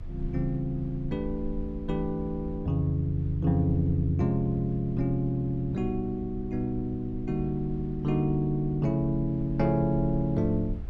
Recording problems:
rumble; below 68 Hz, SNR 13 dB

